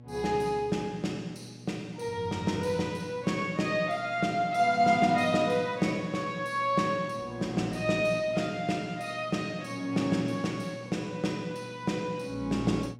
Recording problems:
electrical hum; 60 Hz, harmonics up to 1.1 kHz, SNR 19 dB

